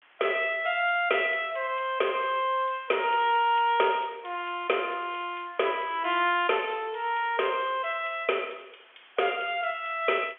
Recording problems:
phone line; 280 Hz to 3.4 kHz, G.711
hiss; SNR 28 dB

